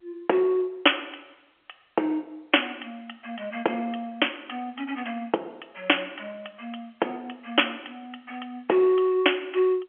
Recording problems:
phone line; 300 Hz to 3.3 kHz, G.711

